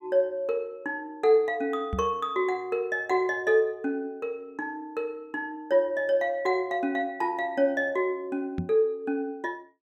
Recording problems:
microphone bump; at 2 s and at 8.5 s; peak +1 dB vs average level

